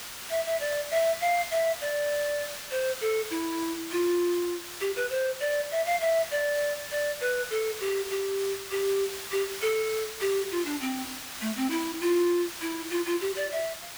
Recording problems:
background hiss; slope +1 dB per octave, SNR 8 dB

